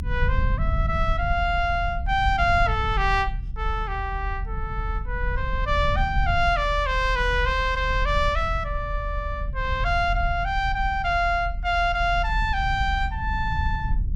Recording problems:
rumble; below 72 Hz, strongest tone 40 Hz, SNR 5 dB

